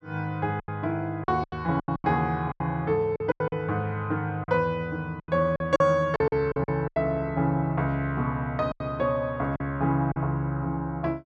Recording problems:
lost packets; 11% of the sound replaced, filled with silence

